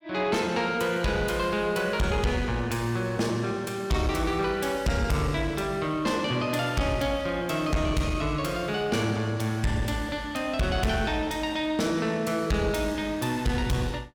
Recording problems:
distorted audio; soft clipping, signal-to-distortion ratio 10 dB

